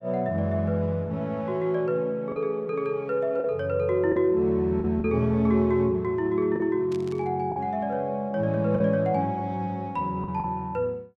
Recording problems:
lost packets; 4% of the sound replaced, filled with the last packet
static burst; at 7 s; peak -16 dB vs average level

